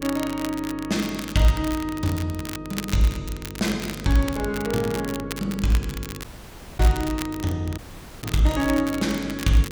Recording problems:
electrical hum; 50 Hz, harmonics up to 500 Hz, SNR 14 dB
crackling; vinyl, SNR 12 dB
audio cutting out; at 6 s for 0.5 s and at 8 s

